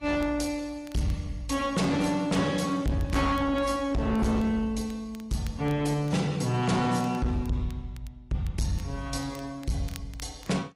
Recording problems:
lossy codec; AAC, log-spectral distance 3 dB, nothing above 11.3 kHz
distorted audio; soft clipping, signal-to-distortion ratio 7 dB
crackle; vinyl, SNR 25 dB

